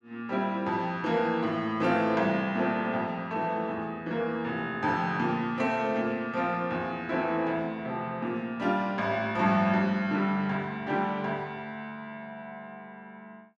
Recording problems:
none

